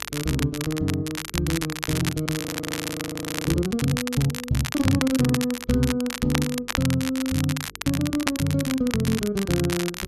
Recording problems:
hum; 50 Hz, harmonics up to 450 Hz, SNR 27 dB
crackling; vinyl, SNR 6 dB
audio freezing; at 2.5 s for 1 s

